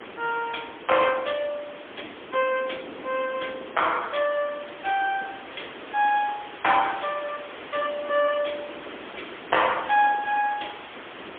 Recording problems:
phone line; 260 Hz to 3.5 kHz, AMR-NB, then MP3
background hiss; SNR 15 dB
wind on the microphone; below 610 Hz, SNR 19 dB

